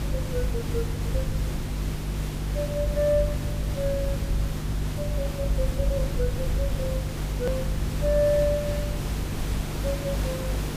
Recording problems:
electrical hum; 50 Hz, harmonics up to 350 Hz, SNR 2 dB
hiss; slope -4 dB per octave, SNR 6 dB
rumble; below 82 Hz, SNR 4 dB
hard cut with a click; at 7.5 s

